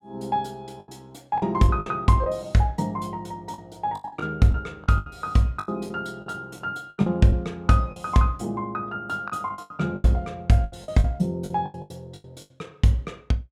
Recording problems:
lost packets; 12% of the sound replaced, filled with the last packet

